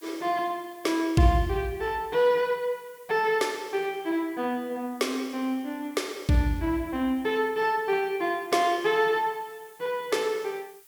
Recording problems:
background hiss; slope +1 dB per octave, SNR 26 dB

